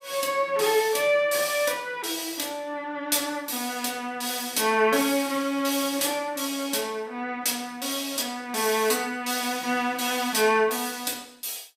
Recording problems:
none

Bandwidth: 15.5 kHz